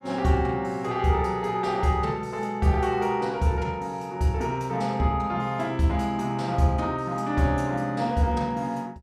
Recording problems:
none

